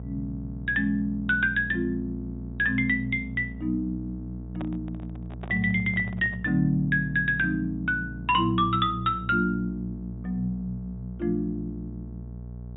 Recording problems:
treble cut off; nothing above 4 kHz
hum; 60 Hz, harmonics up to 660 Hz, SNR 12 dB
microphone handling noise; from 4.5 to 6.5 s; peak -9 dB vs average level

